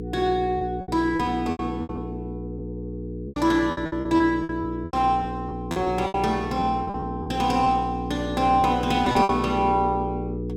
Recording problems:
electrical hum; 60 Hz, harmonics up to 480 Hz, SNR 8 dB
packet loss; 12% of the sound replaced, filled with repeated pitch periods

